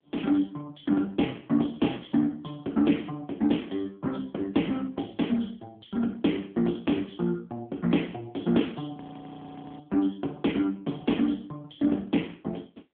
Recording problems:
phone line; 190 Hz to 3.5 kHz, AMR-NB
frozen audio; at 9 s for 1 s

